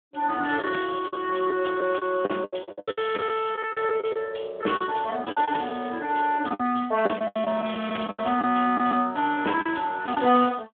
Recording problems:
telephone audio; 220 Hz to 3.4 kHz, Speex
lost packets; 13% of the sound replaced, filled with the last packet

